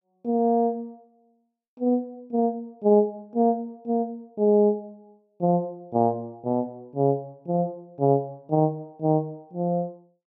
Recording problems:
none

